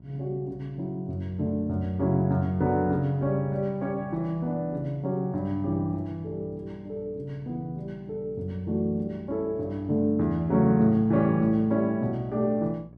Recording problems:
mains hum; 60 Hz, harmonics up to 720 Hz, SNR 23 dB

